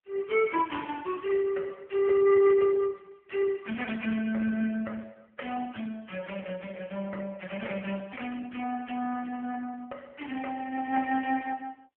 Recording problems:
telephone audio; 240 Hz to 3.2 kHz, AMR-NB

